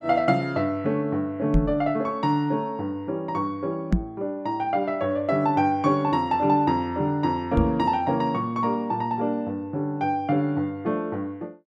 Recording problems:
microphone bump; at 1.5 s, at 4 s and at 7.5 s; peak +7 dB vs average level

